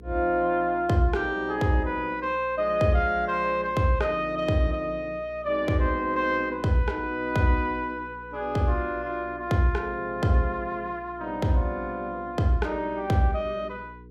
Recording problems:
mains hum; 60 Hz, harmonics up to 480 Hz, SNR 22 dB

